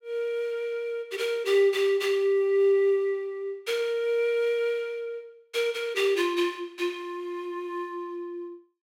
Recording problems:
none

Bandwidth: 16 kHz